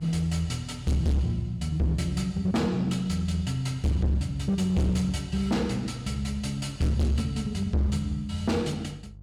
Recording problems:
distortion; hard clipping, signal-to-distortion ratio 7 dB
hum; 50 Hz, harmonics up to 350 Hz, SNR 20 dB

